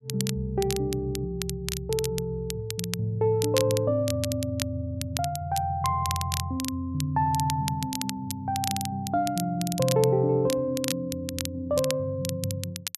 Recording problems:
crackle; vinyl, SNR 8 dB

